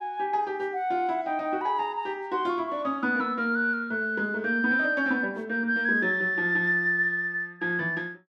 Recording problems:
none

